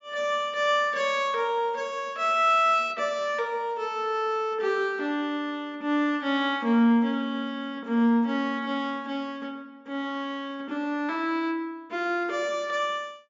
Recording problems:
treble cut off; nothing above 7.4 kHz

